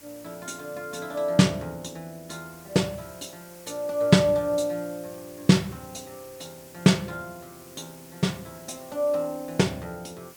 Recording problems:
hiss; slope -1 dB per octave, SNR 22 dB

